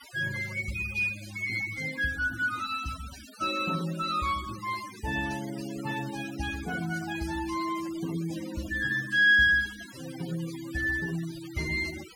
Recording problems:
denoising artefacts; signal-to-artefact ratio 16 dB

